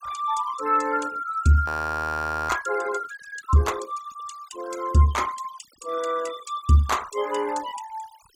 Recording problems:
denoising artefacts; signal-to-artefact ratio 18 dB
audio freezing; at 1.5 s for 1 s

